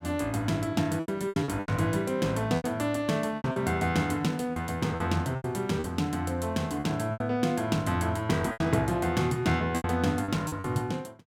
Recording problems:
lost packets; 10% of the sound replaced, filled with repeated pitch periods

